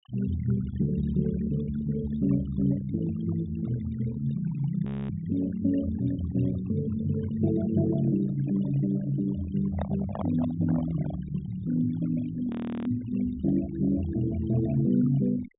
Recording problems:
treble cut off; nothing above 4 kHz
denoising artefacts; signal-to-artefact ratio 17 dB
frozen audio; at 5 s and at 13 s
handling noise; from 9.5 to 11 s; peak -3 dB vs average level

